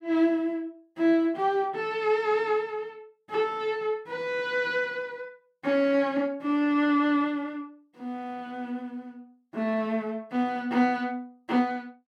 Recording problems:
none

